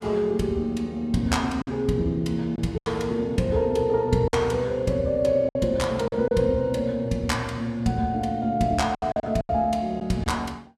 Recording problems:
packet loss; 5% of the sound replaced, filled with silence

